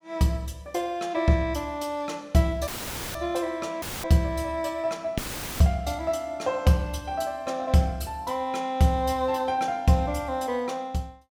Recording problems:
dropout; at 2.5 s, at 4 s and at 5 s; filled with static

